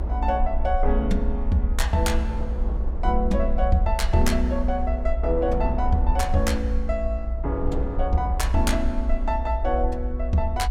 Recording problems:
low-frequency rumble; below 60 Hz, SNR 2 dB
wind on the microphone; below 540 Hz, SNR 15 dB

